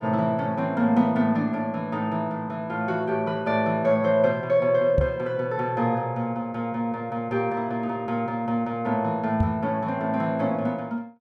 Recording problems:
knock on the microphone; at 5 s and at 9.5 s; peak +5 dB vs average level

